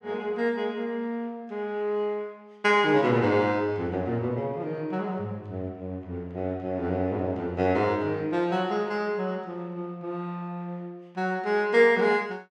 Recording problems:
none

